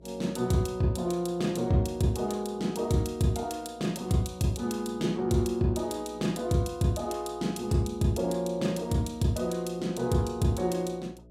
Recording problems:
electrical hum; 60 Hz, harmonics up to 660 Hz, SNR 25 dB

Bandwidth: 16 kHz